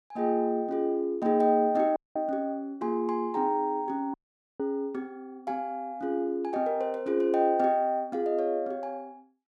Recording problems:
audio cutting out; at 2 s and at 4 s

